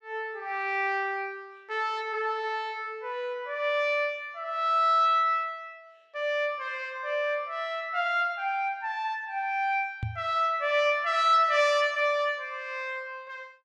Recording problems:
microphone bump; at 10 s; peak -2 dB vs average level

